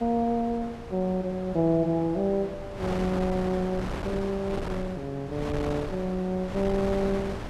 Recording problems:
wind noise; below 840 Hz, SNR 8 dB

